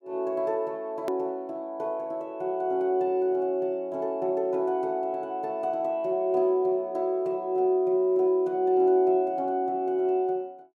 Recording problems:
hard cut with a click; at 1 s

